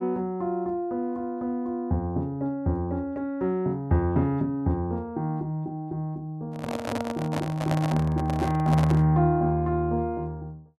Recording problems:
microphone handling noise; from 6.5 to 9 s; peak +1 dB vs average level

